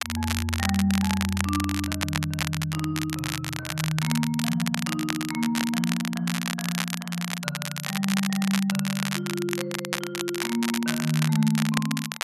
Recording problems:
crackling; vinyl, SNR 4 dB

